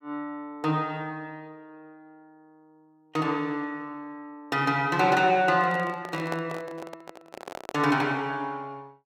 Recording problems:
microphone handling noise; from 5.5 to 8 s; peak -3 dB vs average level

